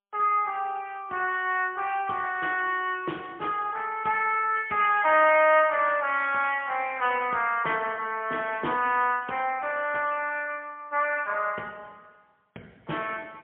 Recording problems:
telephone audio; 260 Hz to 3.3 kHz, AMR-NB, then MP3

